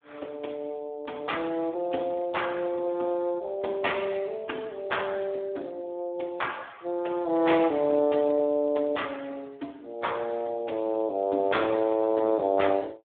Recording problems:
telephone audio; 240 Hz to 3.6 kHz, Speex

